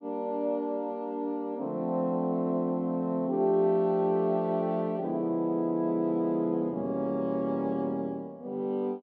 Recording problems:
none

